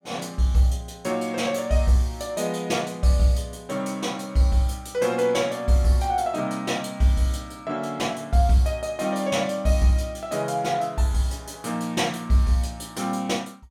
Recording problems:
none

